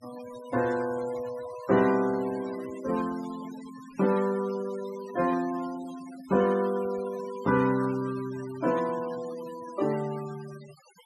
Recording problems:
noise reduction artefacts; signal-to-artefact ratio 17 dB

